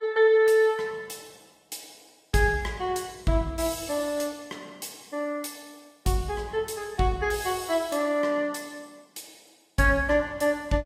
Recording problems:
lossy compression; Vorbis, log-spectral distance 4 dB, nothing above 15.1 kHz

